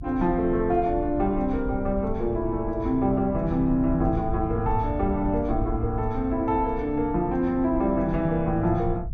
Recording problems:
low-frequency rumble; below 92 Hz, SNR 10 dB

